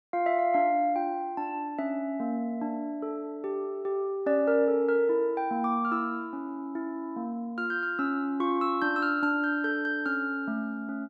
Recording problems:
none

